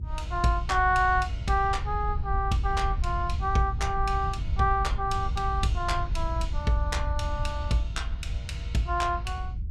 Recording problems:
rumble; below 76 Hz, SNR 4 dB

